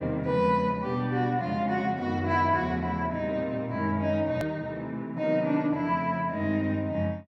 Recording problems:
edit click; at 4.5 s

